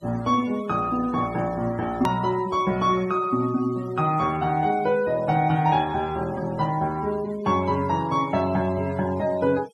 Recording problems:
denoising artefacts; signal-to-artefact ratio 21 dB
edit click; at 2 s

